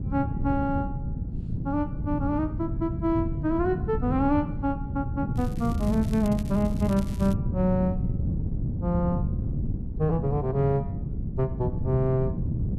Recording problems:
wind noise; below 170 Hz, SNR 3 dB
crackling; from 5.5 to 7.5 s; loose cable, SNR 20 dB

